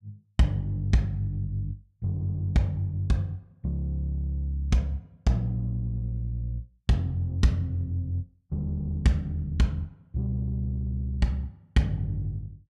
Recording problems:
none

